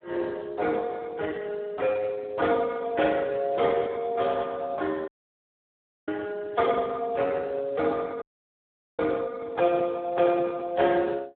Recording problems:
telephone audio; 300 Hz to 2.1 kHz, Speex
dropout; at 5 s for 1 s and at 8 s for 1 s

